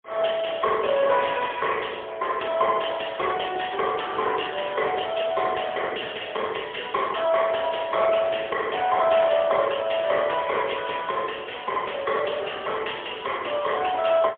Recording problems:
phone line; 340 Hz to 3.4 kHz, AMR-NB, then MP3

